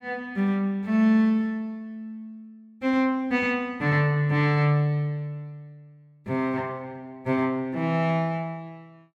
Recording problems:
none

